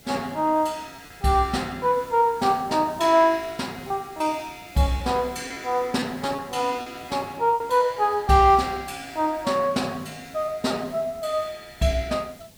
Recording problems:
hiss; SNR 23 dB
lost packets; 3% of the sound replaced, filled with repeated pitch periods

